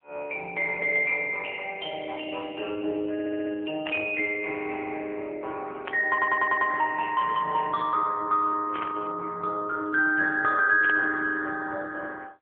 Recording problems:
phone line; 260 Hz to 2.8 kHz, AMR-NB
audio stuttering; at 3 s and at 6 s
burst of static; 4 times, first at 4 s; peak -3 dB vs average level

